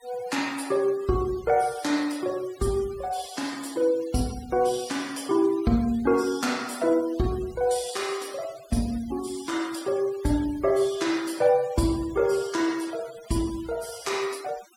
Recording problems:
noise reduction artefacts; signal-to-artefact ratio 19 dB

